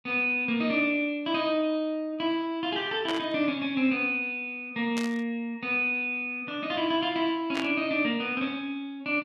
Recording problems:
burst of static; at 3 s, at 5 s and at 7.5 s; peak -3 dB vs average level

